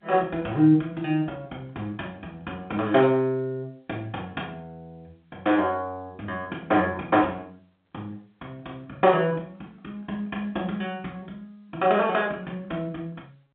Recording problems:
phone line; 240 Hz to 4 kHz, G.711

